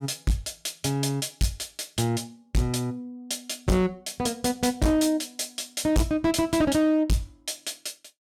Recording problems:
distorted audio; hard clipping, signal-to-distortion ratio 7 dB

